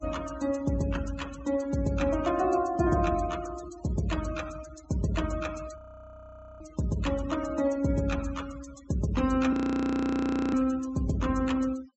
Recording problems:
treble missing; nothing above 7.9 kHz
noise reduction artefacts; signal-to-artefact ratio 17 dB
frozen audio; at 6 s for 1 s and at 9.5 s for 1 s

